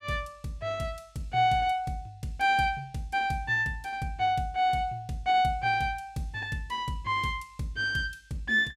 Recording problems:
none

